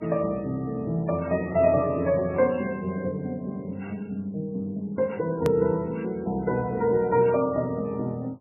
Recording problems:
codec artefacts; MP3, log-spectral distance 2 dB, nothing above 14.1 kHz
hard cut with a click; at 5.5 s

